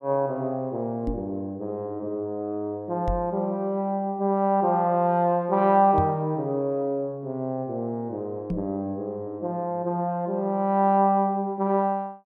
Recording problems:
microphone thump; 4 times, first at 1 s; peak +1 dB vs average level

